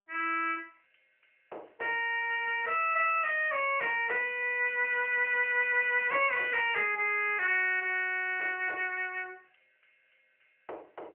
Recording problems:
telephone audio; 300 Hz to 3.2 kHz, AMR-NB

